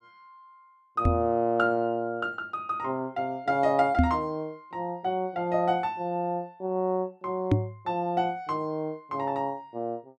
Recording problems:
microphone thump; at 1 s, at 4 s and at 7.5 s; peak +9 dB vs average level

